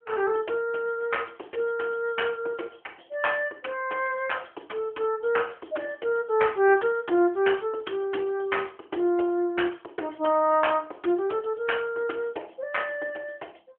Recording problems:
telephone audio; 280 Hz to 3.3 kHz, AMR-NB

